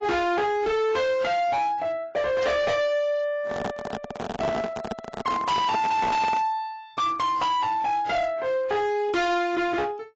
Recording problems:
lossy compression; AAC, log-spectral distance 2 dB, nothing above 7.3 kHz
distortion; hard clipping, uneven, signal-to-distortion ratio 7 dB
microphone handling noise; from 3.5 to 6.5 s; peak 0 dB vs average level

